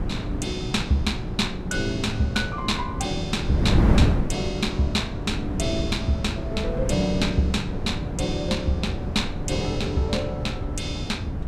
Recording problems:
wind noise; below 220 Hz, SNR 2 dB

